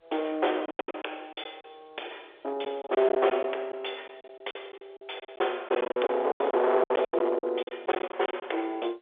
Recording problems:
phone line; 320 Hz to 3.6 kHz, G.711
distortion; hard clipping, signal-to-distortion ratio 11 dB
lost packets; 15% of the sound replaced, filled with silence

